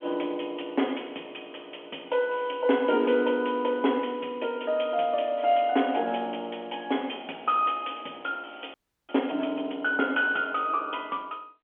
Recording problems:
telephone audio; 240 Hz to 3.4 kHz, G.711
frozen audio; at 8.5 s

